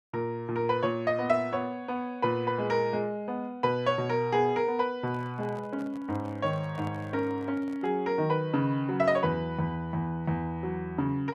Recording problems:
microphone handling noise; from 5 to 8 s; peak -10 dB vs average level

